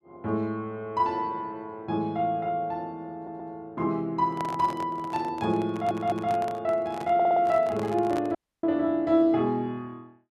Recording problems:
audio stuttering; at 3 s, at 5.5 s and at 7 s
handling noise; from 4.5 to 8.5 s; peak -5 dB vs average level
dropout; at 8.5 s

